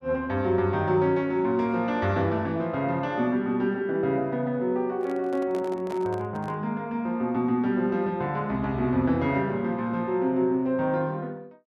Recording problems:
microphone handling noise; from 5 to 6.5 s; peak -8 dB vs average level

